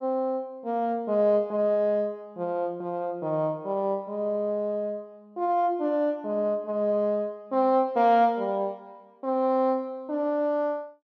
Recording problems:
none

